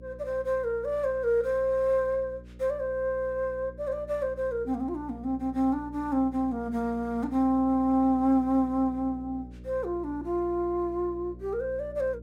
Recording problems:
mains hum; 60 Hz, harmonics up to 600 Hz, SNR 18 dB

